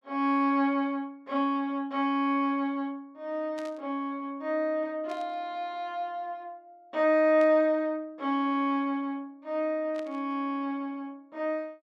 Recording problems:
static burst; 4 times, first at 3.5 s; peak -13 dB vs average level

